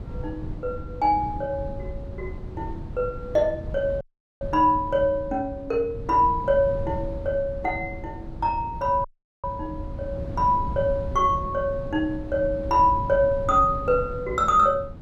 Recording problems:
wind on the microphone; below 160 Hz, SNR 12 dB
audio cutting out; at 4 s and at 9 s

